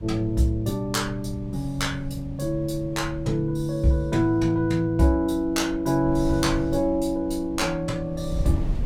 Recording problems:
wind noise; below 100 Hz, SNR 12 dB

